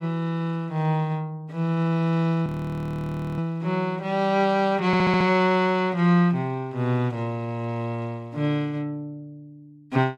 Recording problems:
frozen audio; at 2.5 s for 1 s
audio stuttering; at 5 s

